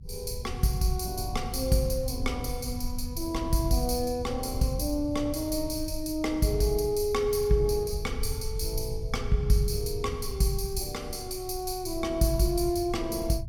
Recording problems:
low-frequency rumble; below 86 Hz, SNR 9 dB

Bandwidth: 17.5 kHz